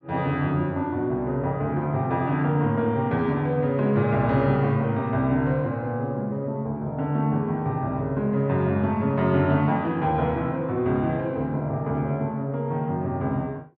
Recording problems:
none

